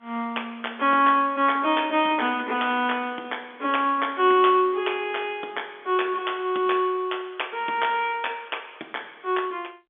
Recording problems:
telephone audio; 220 Hz to 3.5 kHz, G.711

